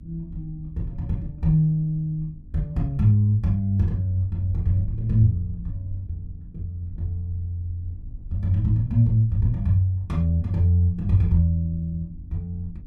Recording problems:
electrical hum; 50 Hz, harmonics up to 300 Hz, SNR 27 dB
wind on the microphone; below 78 Hz, SNR 18 dB

